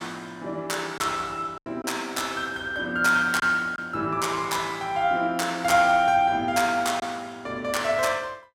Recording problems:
packet loss; 2% of the sound replaced, filled with silence

